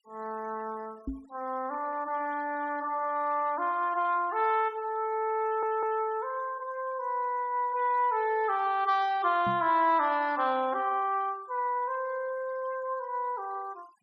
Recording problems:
noise reduction artefacts; signal-to-artefact ratio 27 dB
microphone thump; at 1 s and at 9.5 s; peak -2 dB vs average level
stutter; at 5.5 s

